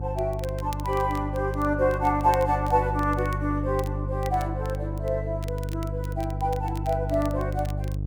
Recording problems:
hum; 50 Hz, harmonics up to 450 Hz, SNR 4 dB
crackle; vinyl, SNR 21 dB

